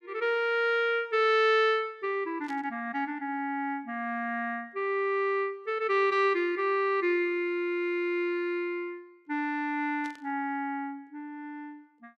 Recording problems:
static burst; at 2.5 s and at 10 s; peak -15 dB vs average level

